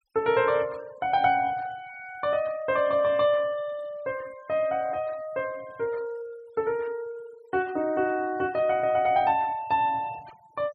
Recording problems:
denoising artefacts; signal-to-artefact ratio 25 dB

